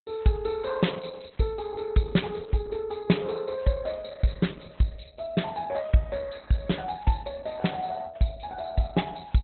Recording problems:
codec artefacts; Opus, log-spectral distance 9 dB, nothing above 4.1 kHz

